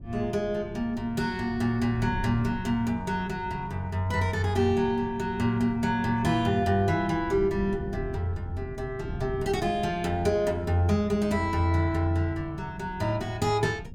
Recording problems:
wind noise; below 150 Hz, SNR 14 dB

